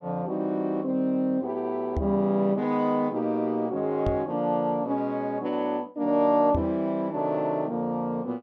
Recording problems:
microphone thump; at 2 s, at 4 s and at 6.5 s; peak +1 dB vs average level

